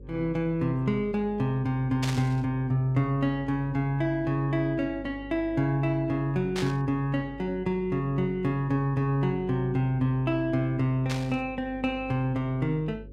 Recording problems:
hum; 50 Hz, harmonics up to 550 Hz, SNR 19 dB
static burst; at 2 s, at 6.5 s and at 11 s; peak -2 dB vs average level

